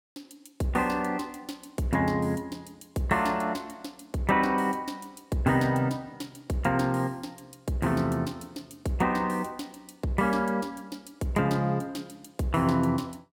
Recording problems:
none

